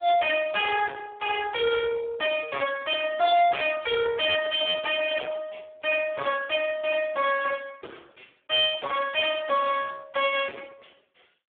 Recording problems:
phone line; 260 Hz to 2.3 kHz, Speex
distorted audio; soft clipping, signal-to-distortion ratio 9 dB

